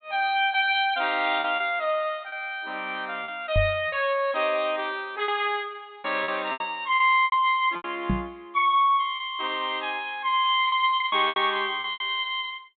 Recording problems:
treble missing; nothing above 4 kHz
lost packets; 8% of the sound replaced, filled with repeated pitch periods
microphone bump; at 3.5 s and at 8 s; peak +2 dB vs average level

